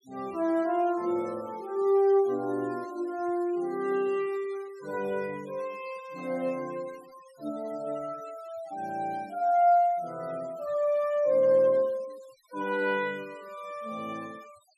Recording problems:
noise reduction artefacts; signal-to-artefact ratio 25 dB

